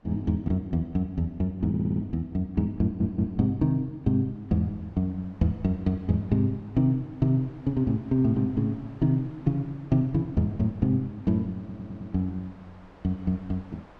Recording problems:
wind on the microphone; below 1.1 kHz, SNR 27 dB
stutter; at 1.5 s, at 3 s and at 12 s

